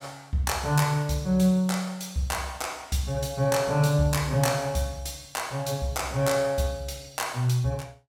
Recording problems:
none

